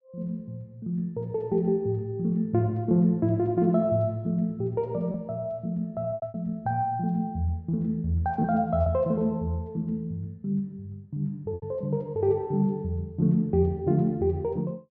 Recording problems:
lost packets; 2% of the sound replaced, filled with repeated pitch periods

